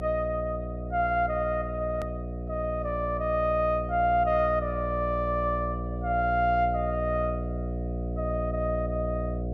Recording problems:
hum; 60 Hz, harmonics up to 720 Hz, SNR 5 dB
click at an edit; at 2 s

